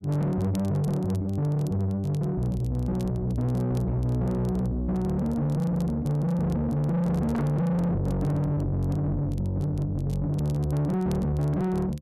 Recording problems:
distortion; soft clipping, signal-to-distortion ratio 7 dB
crackle; vinyl, SNR 27 dB

